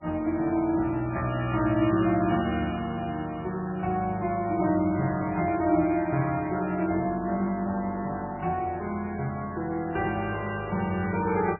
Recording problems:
codec artefacts; MP3, log-spectral distance 3 dB, nothing above 2.4 kHz

